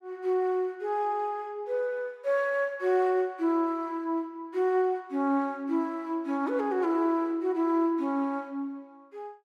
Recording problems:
none

